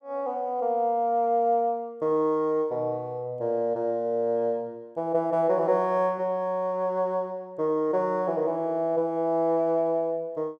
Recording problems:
none

